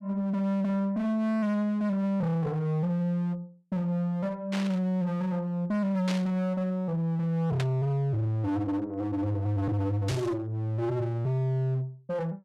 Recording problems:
distorted audio; hard clipping, uneven, signal-to-distortion ratio 7 dB
static burst; 4 times, first at 4.5 s; peak -3 dB vs average level

